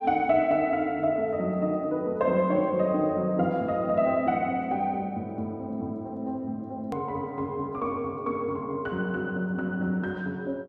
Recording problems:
click at an edit; at 7 s

